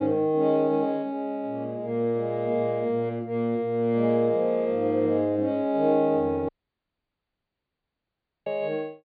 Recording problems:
low-pass filter; nothing above 4.8 kHz
dropout; at 6.5 s for 2 s

